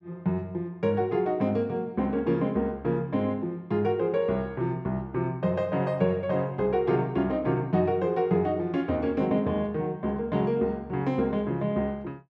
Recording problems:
none

